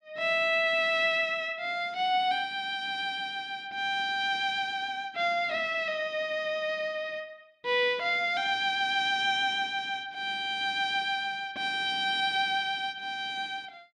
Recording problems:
none

